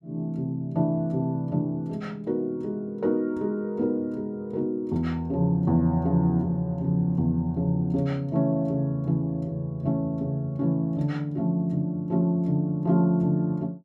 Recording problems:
none

